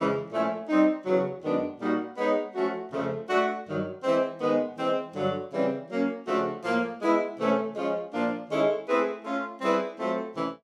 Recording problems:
none

